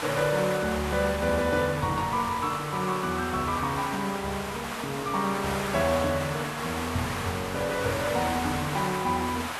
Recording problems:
hiss; SNR 5 dB

